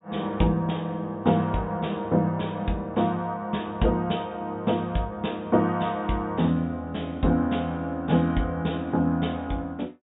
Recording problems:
low-pass filter; nothing above 4 kHz

